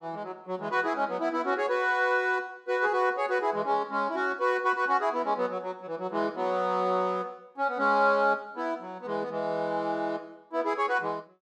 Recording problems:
none

